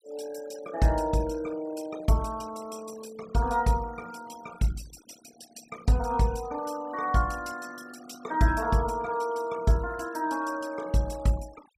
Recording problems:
noise reduction artefacts; signal-to-artefact ratio 19 dB

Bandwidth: 15.5 kHz